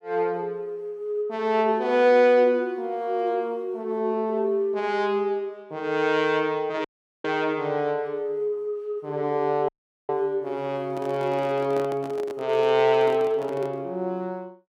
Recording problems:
audio cutting out; at 7 s and at 9.5 s
microphone handling noise; from 11 to 14 s; peak -8 dB vs average level

